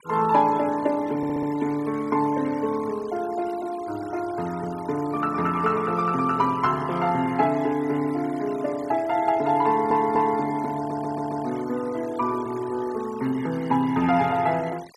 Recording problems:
noise reduction artefacts; signal-to-artefact ratio 21 dB
stutter; at 1 s, at 9.5 s and at 11 s

